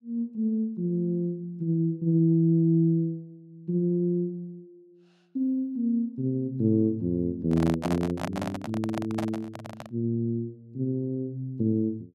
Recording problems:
handling noise; from 7.5 to 10 s; peak -1 dB vs average level

